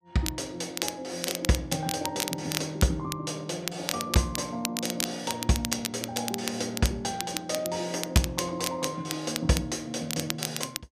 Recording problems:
crackling; vinyl, SNR 4 dB

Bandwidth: 14.5 kHz